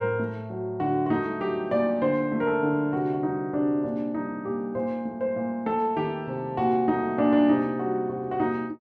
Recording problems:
none

